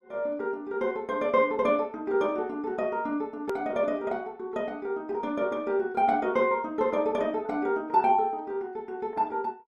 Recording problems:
edit click; at 3.5 s

